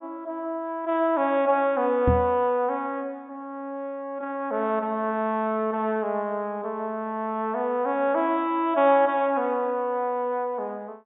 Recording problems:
treble cut off; nothing above 3.7 kHz
microphone bump; at 2 s; peak +6 dB vs average level

